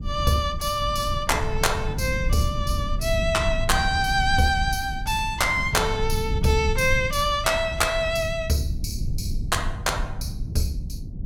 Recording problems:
rumble; below 110 Hz, SNR 6 dB

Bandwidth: 17.5 kHz